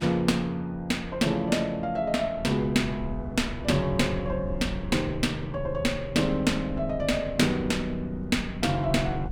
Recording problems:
rumble; below 110 Hz, SNR 13 dB

